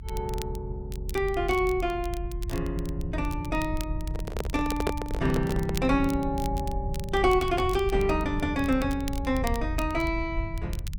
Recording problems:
low-frequency rumble; below 76 Hz, SNR 6 dB
crackling; vinyl, SNR 17 dB
handling noise; from 4 to 6 s; peak +4 dB vs average level

